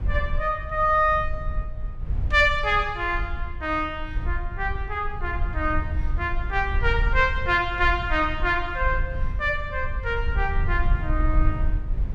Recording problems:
rumble; below 68 Hz, SNR 5 dB

